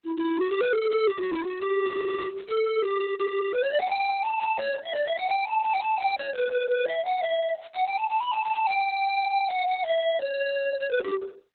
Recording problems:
lossy compression; Opus, log-spectral distance 3 dB, nothing above 4.1 kHz
distorted audio; soft clipping, signal-to-distortion ratio 7 dB

